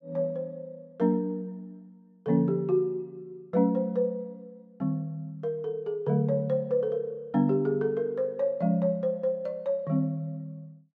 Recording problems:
none

